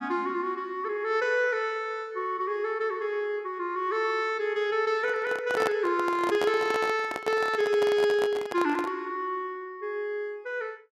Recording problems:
handling noise; from 5 to 9 s; peak +2 dB vs average level

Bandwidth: 14 kHz